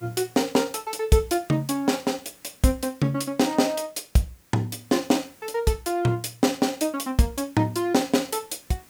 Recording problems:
hiss; slope -2 dB per octave, SNR 28 dB

